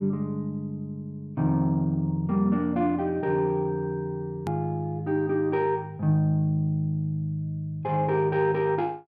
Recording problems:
click at an edit; at 4.5 s

